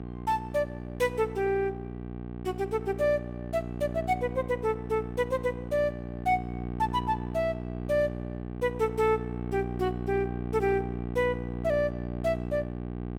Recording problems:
mains hum; 60 Hz, harmonics up to 1.2 kHz, SNR 6 dB

